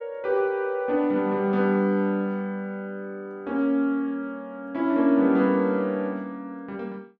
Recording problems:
none

